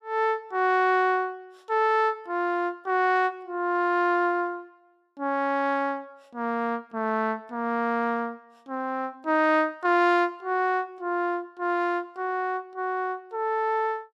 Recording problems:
none

